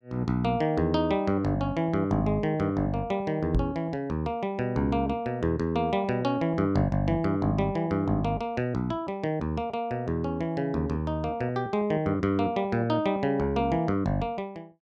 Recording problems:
microphone thump; at 3.5 s; peak +4 dB vs average level

